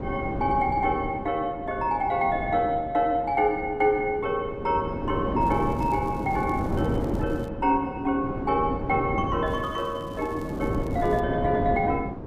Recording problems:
hum; 50 Hz, harmonics up to 1.7 kHz, SNR 23 dB
wind noise; below 380 Hz, SNR 6 dB
crackling; from 5.5 to 7.5 s and from 9.5 to 11 s; loose cable, SNR 28 dB

